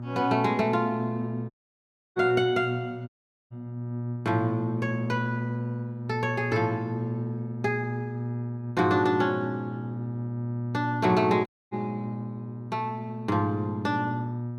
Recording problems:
electrical hum; 60 Hz, harmonics up to 960 Hz, SNR 6 dB
audio cutting out; at 1.5 s for 0.5 s, at 3 s and at 11 s

